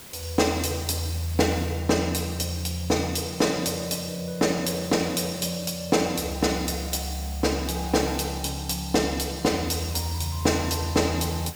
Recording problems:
background hiss; slope -2 dB per octave, SNR 18 dB

